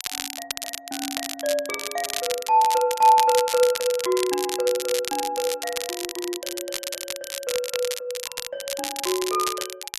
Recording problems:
crackle; vinyl, SNR 6 dB

